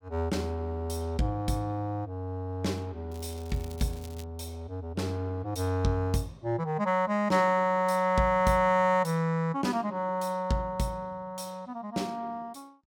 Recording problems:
crackling; from 3 to 4 s; loose cable, SNR 22 dB

